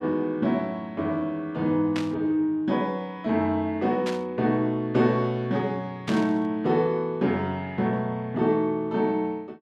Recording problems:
static burst; at 2 s, at 4 s and at 6 s; peak -4 dB vs average level

